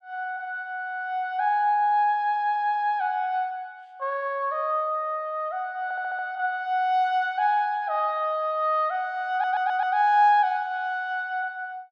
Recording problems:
stutter; at 2 s, at 6 s and at 9.5 s

